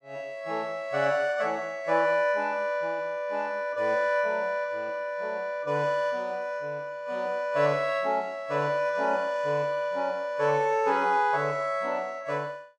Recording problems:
none

